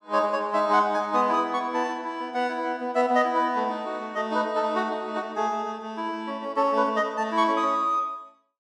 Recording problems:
none

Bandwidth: 13 kHz